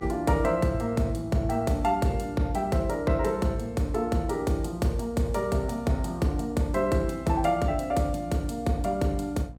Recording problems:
electrical hum; 60 Hz, harmonics up to 780 Hz, SNR 21 dB

